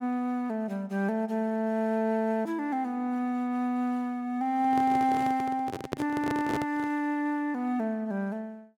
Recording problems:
handling noise; from 4.5 to 7 s; peak +1 dB vs average level

